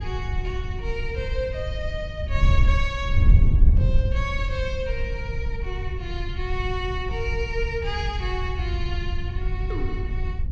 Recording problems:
treble cut off; nothing above 8 kHz
rumble; below 82 Hz, SNR 6 dB
wind on the microphone; below 80 Hz, SNR -4 dB

